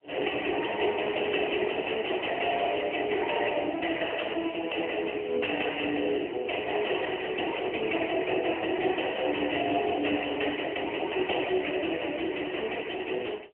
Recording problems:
telephone audio; 260 Hz to 3 kHz, AMR-NB

